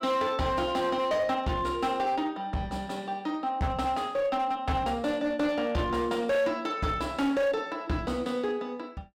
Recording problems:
distortion; hard clipping, uneven, signal-to-distortion ratio 10 dB

